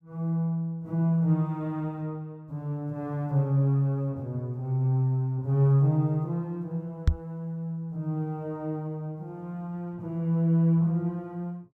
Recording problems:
knock on the microphone; at 7 s; peak +9 dB vs average level

